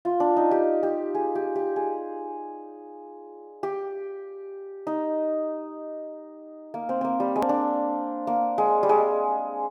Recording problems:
edit click; at 7.5 s

